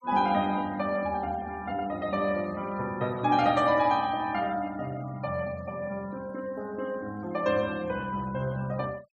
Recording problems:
denoising artefacts; signal-to-artefact ratio 23 dB

